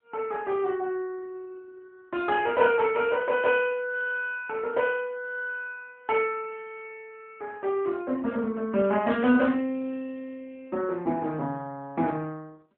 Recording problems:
telephone audio; 280 Hz to 3.3 kHz, AMR-NB

